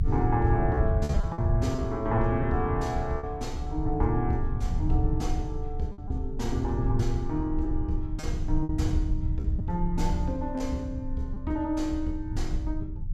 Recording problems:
rumble; below 90 Hz, strongest tone 24 Hz, SNR 2 dB
lost packets; 4% of the sound replaced, filled with repeated pitch periods

